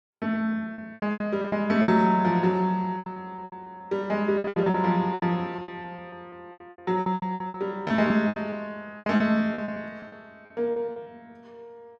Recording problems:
packet loss; 17% of the sound replaced, filled with repeated pitch periods

